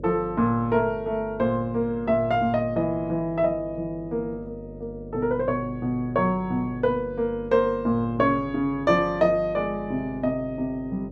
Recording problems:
electrical hum; 50 Hz, harmonics up to 600 Hz, SNR 16 dB

